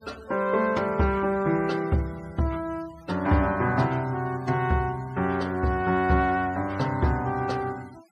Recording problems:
noise reduction artefacts; signal-to-artefact ratio 25 dB

